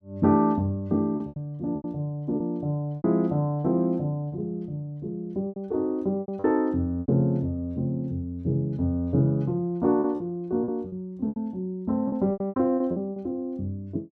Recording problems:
lost packets; 9% of the sound replaced, filled with repeated pitch periods

